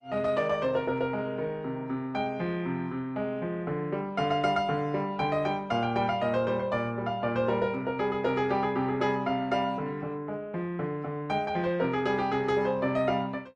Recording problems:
codec artefacts; Opus, log-spectral distance 2 dB

